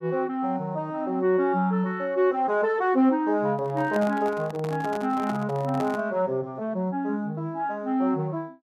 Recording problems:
microphone handling noise; from 3.5 to 6 s; peak -6 dB vs average level

